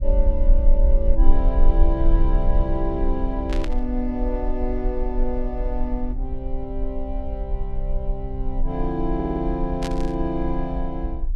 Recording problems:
low-frequency rumble; below 40 Hz, strongest tone 20 Hz, SNR -2 dB
burst of static; at 3.5 s and at 10 s; peak -2 dB vs average level
stutter; at 9 s

